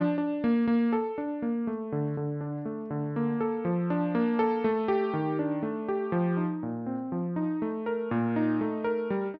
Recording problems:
treble cut off; nothing above 6 kHz

